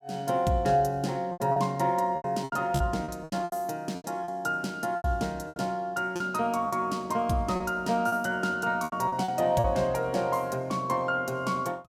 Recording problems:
lost packets; 10% of the sound replaced, filled with repeated pitch periods

